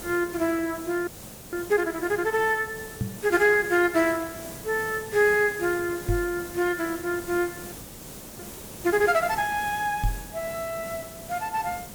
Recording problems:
background hiss; SNR 13 dB
audio freezing; at 1 s and at 7.5 s for 0.5 s
microphone thump; at 3 s, at 6 s and at 10 s; peak +2 dB vs average level

